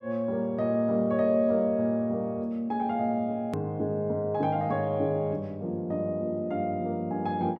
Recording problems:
click at an edit; at 3.5 s

